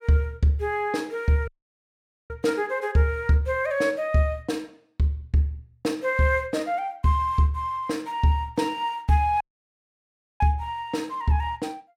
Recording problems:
dropout; at 1.5 s for 1 s and at 9.5 s for 1 s

